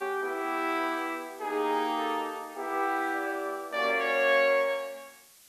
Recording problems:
background hiss; slope +1 dB per octave, SNR 24 dB

